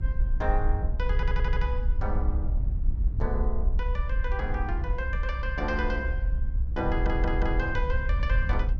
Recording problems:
rumble; below 62 Hz, strongest tone 40 Hz, SNR 0 dB
wind noise; below 64 Hz, SNR -1 dB
stutter; at 1 s and at 7 s

